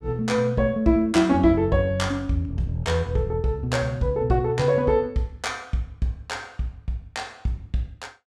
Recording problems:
none

